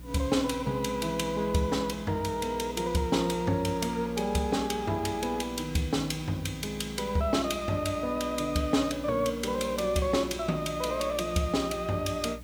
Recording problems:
hum; 60 Hz, harmonics up to 300 Hz, SNR 17 dB
background hiss; slope -3 dB per octave, SNR 25 dB

